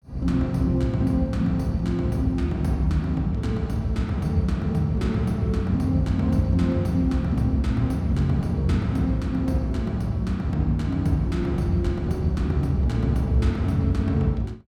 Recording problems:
none

